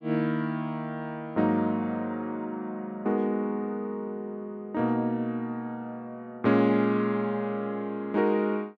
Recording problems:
none

